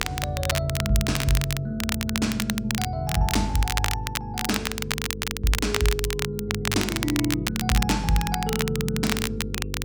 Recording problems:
hum; 50 Hz, harmonics up to 500 Hz, SNR 9 dB
crackle; vinyl, SNR 3 dB

